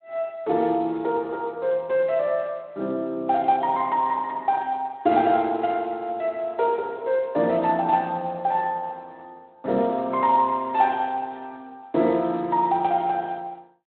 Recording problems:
telephone audio; 240 Hz to 3.6 kHz, Speex

